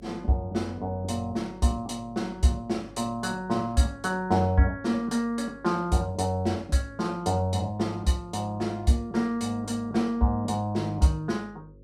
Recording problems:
hum; 50 Hz, harmonics up to 550 Hz, SNR 24 dB

